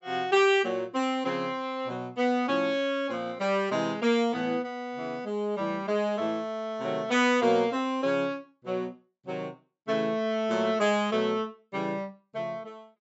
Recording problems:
low-pass filter; nothing above 8 kHz

